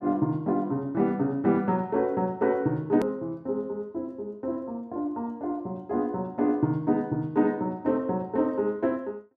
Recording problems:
hard cut with a click; at 3 s

